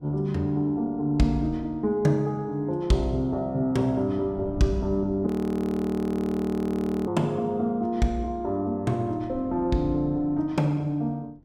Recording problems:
wind on the microphone; below 230 Hz, SNR 18 dB
frozen audio; at 5.5 s for 2 s

